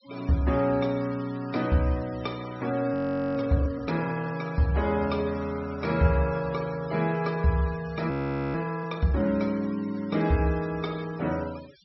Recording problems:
treble missing; nothing above 5.6 kHz
noise reduction artefacts; signal-to-artefact ratio 20 dB
frozen audio; at 3 s and at 8 s

